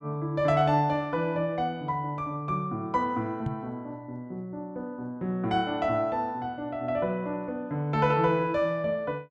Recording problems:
knock on the microphone; at 3.5 s; peak +2 dB vs average level

